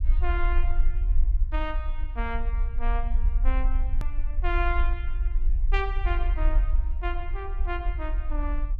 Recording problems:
low-pass filter; nothing above 8 kHz
low-frequency rumble; below 48 Hz, strongest tone 24 Hz, SNR -6 dB
click at an edit; at 4 s

